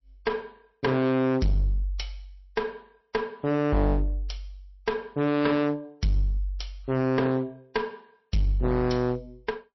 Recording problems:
codec artefacts; MP3, log-spectral distance 2 dB, nothing above 5.7 kHz
distortion; hard clipping, uneven, signal-to-distortion ratio 6 dB

